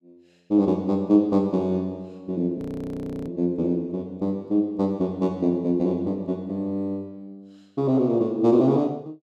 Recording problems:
audio freezing; at 2.5 s for 0.5 s

